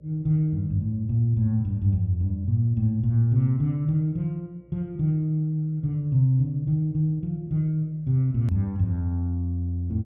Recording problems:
hum; 60 Hz, harmonics up to 600 Hz, SNR 32 dB
click at an edit; at 8.5 s

